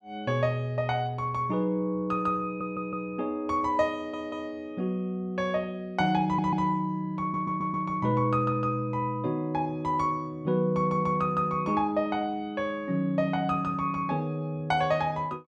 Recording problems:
stutter; 4 times, first at 2.5 s

